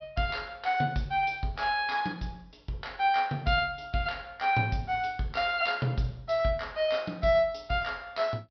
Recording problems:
low-pass filter; nothing above 5.5 kHz

